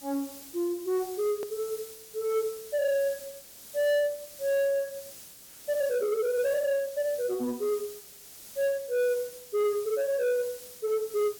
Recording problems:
distorted audio; soft clipping, signal-to-distortion ratio 11 dB
hiss; SNR 15 dB
edit click; at 1.5 s

